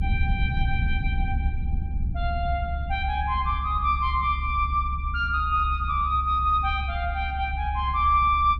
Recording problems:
rumble; below 72 Hz, strongest tone 68 Hz, SNR 4 dB

